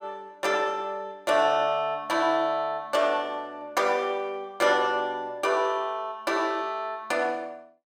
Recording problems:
none

